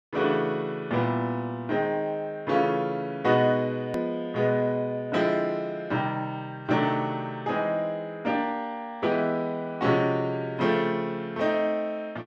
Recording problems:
click at an edit; at 4 s

